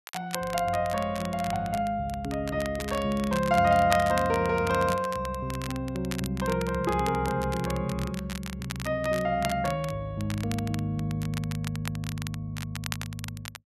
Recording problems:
crackle; vinyl, SNR 12 dB

